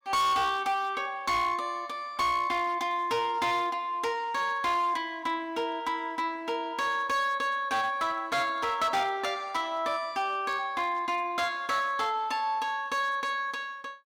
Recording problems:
distorted audio; hard clipping, signal-to-distortion ratio 11 dB

